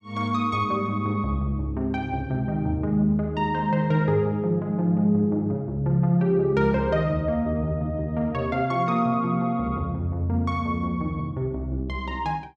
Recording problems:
none

